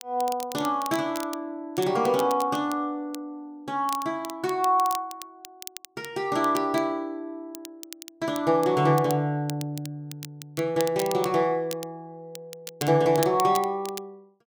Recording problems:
crackling; vinyl, SNR 15 dB

